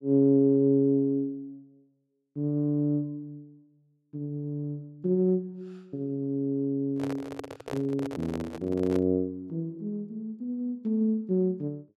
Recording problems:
microphone handling noise; from 7 to 9 s; peak -5 dB vs average level

